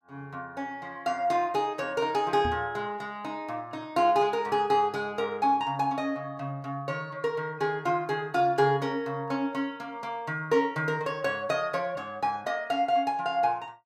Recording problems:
microphone thump; at 2.5 s; peak -3 dB vs average level

